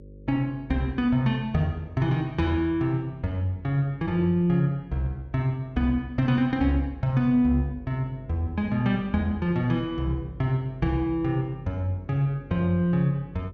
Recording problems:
electrical hum; 50 Hz, harmonics up to 550 Hz, SNR 21 dB

